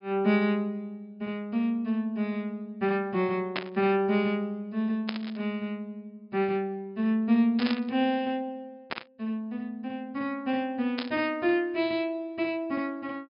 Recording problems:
treble missing; nothing above 5.2 kHz
static burst; 5 times, first at 3.5 s; peak +1 dB vs average level

